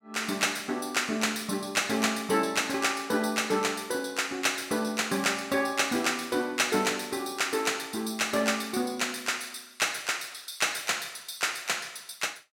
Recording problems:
none

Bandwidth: 16.5 kHz